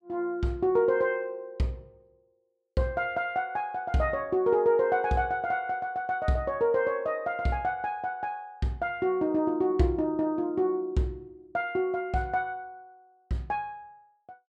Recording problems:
none

